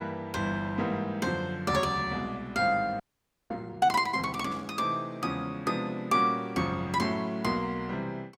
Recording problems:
frozen audio; at 3 s for 0.5 s
burst of static; at 4.5 s; peak -15 dB vs average level

